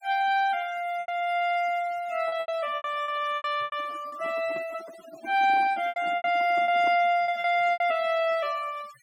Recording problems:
denoising artefacts; signal-to-artefact ratio 20 dB
lost packets; 10% of the sound replaced, filled with repeated pitch periods
microphone handling noise; from 3.5 to 7 s; peak -9 dB vs average level

